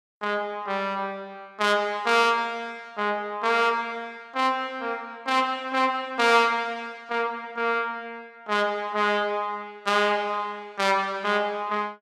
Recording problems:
none

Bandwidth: 14.5 kHz